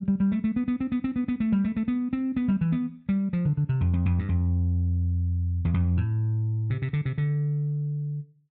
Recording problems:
none

